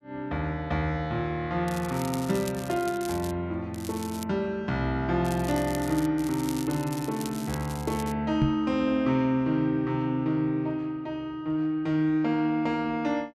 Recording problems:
crackle; 4 times, first at 1.5 s; loose cable, SNR 14 dB
microphone thump; at 8.5 s; peak +5 dB vs average level

